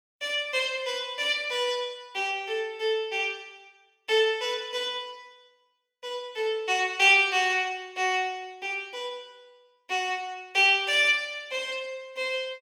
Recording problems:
none

